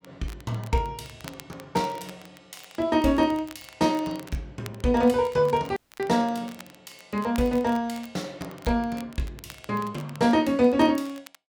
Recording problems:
crackling; vinyl, SNR 23 dB
dropout; at 6 s

